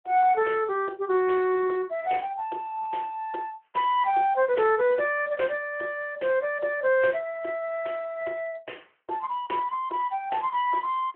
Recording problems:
telephone audio; 320 Hz to 3.2 kHz, Speex

